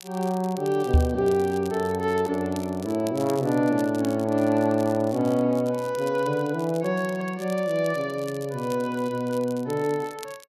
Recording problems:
crackle; vinyl, SNR 21 dB
microphone thump; at 1 s; peak +9 dB vs average level

